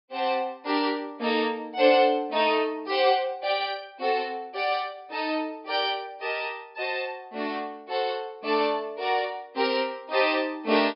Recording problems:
low-pass filter; nothing above 5.5 kHz

